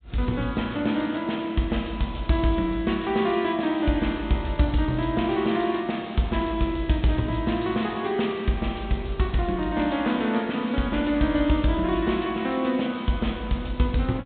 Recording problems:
treble cut off; nothing above 4 kHz

